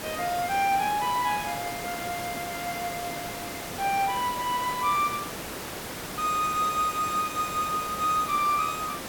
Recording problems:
background hiss; slope -4 dB per octave, SNR 7 dB

